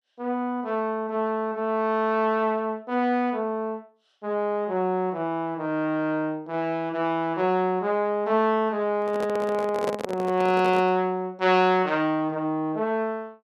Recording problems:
handling noise; from 9 to 11 s; peak -1 dB vs average level

